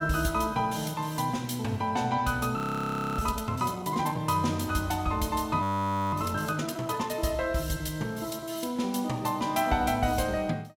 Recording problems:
audio freezing; at 2.5 s for 0.5 s and at 5.5 s for 0.5 s

